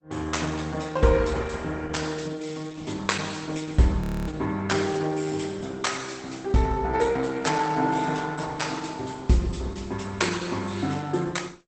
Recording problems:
lossy codec; Opus, log-spectral distance 5 dB, nothing above 7.8 kHz
audio freezing; at 4 s

